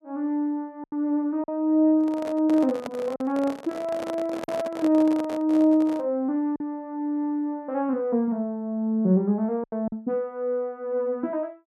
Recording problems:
packet loss; 3% of the sound replaced, filled with silence
handling noise; from 2 to 6 s; peak -4 dB vs average level

